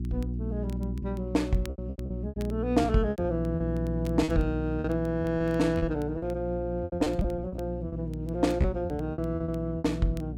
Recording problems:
hum; 60 Hz, harmonics up to 360 Hz, SNR 6 dB
crackle; vinyl, SNR 27 dB
packet loss; 12% of the sound replaced, filled with repeated pitch periods

